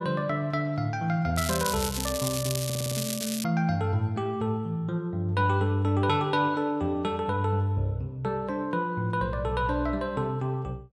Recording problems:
crackle; from 1.5 to 3.5 s; loose cable, SNR 5 dB
stutter; at 2.5 s

